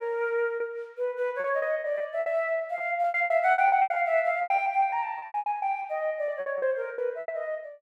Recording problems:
packet loss; 17% of the sound replaced, filled with repeated pitch periods

